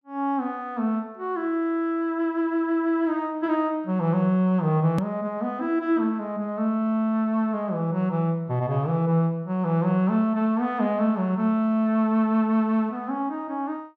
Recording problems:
edit click; at 5 s

